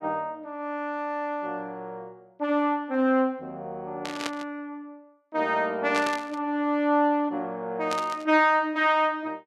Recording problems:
burst of static; at 4 s, at 6 s and at 8 s; peak -1 dB vs average level

